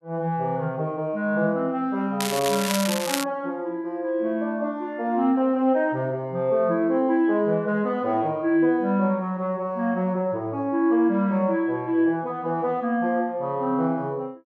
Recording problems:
crackle; from 2 to 3 s; loose cable, SNR 5 dB

